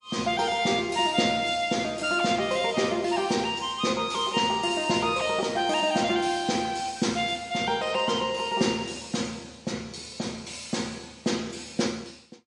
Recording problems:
lossy codec; MP3, log-spectral distance 4 dB

